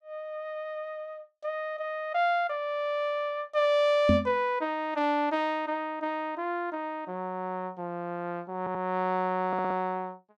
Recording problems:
knock on the microphone; at 4 s; peak +8 dB vs average level
stutter; at 8.5 s and at 9.5 s

